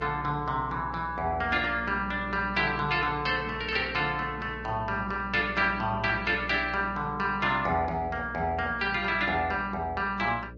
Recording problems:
codec artefacts; MP3, log-spectral distance 2 dB
electrical hum; 60 Hz, harmonics up to 600 Hz, SNR 15 dB

